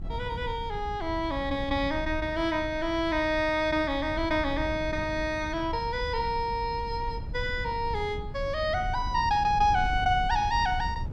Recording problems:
wind noise; below 100 Hz, SNR 10 dB

